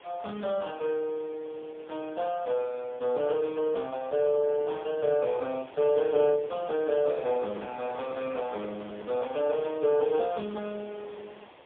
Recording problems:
telephone audio; 220 Hz to 2.5 kHz, AMR-NB, then MP3
hiss; SNR 21 dB
microphone handling noise; from 7 to 9 s; peak -10 dB vs average level

